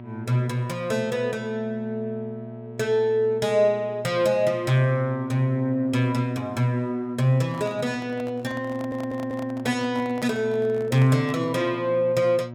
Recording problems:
mains hum; 60 Hz, harmonics up to 960 Hz, SNR 14 dB
handling noise; from 7.5 to 12 s; peak -9 dB vs average level
stutter; at 8.5 s

